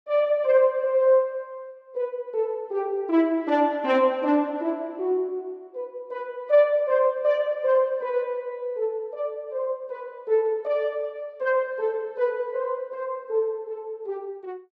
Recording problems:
none

